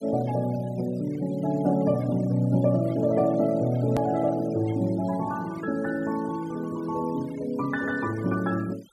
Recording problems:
denoising artefacts; signal-to-artefact ratio 22 dB
click at an edit; at 4 s

